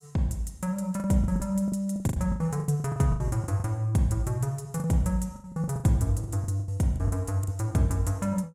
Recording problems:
packet loss; 15% of the sound replaced, filled with the last packet

